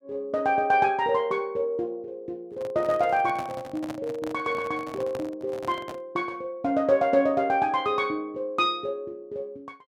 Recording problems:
microphone handling noise; from 2.5 to 6 s; peak -6 dB vs average level

